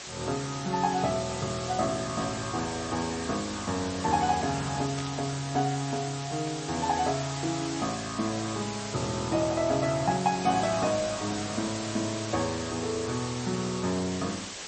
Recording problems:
lossy compression; MP3, log-spectral distance 16 dB, nothing above 7.8 kHz
hiss; slope 0 dB per octave, SNR 8 dB
static burst; at 5 s; peak -5 dB vs average level

